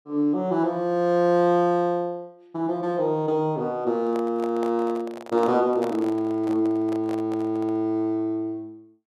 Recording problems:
microphone handling noise; from 4 to 8 s; peak -6 dB vs average level

